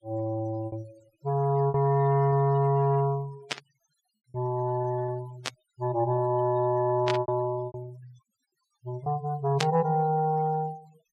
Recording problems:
noise reduction artefacts; signal-to-artefact ratio 22 dB
packet loss; 5% of the sound replaced, filled with repeated pitch periods
static burst; 4 times, first at 3.5 s; peak +2 dB vs average level

